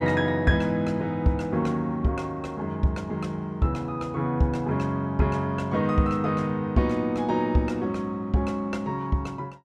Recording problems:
none

